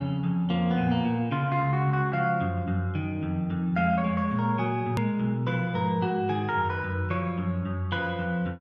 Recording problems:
click at an edit; at 5 s

